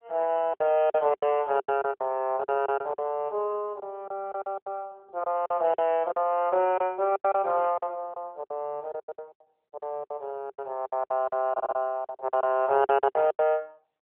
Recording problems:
telephone audio; 340 Hz to 3.3 kHz, AMR-NB
packet loss; 15% of the sound replaced, filled with silence
audio stuttering; at 12 s

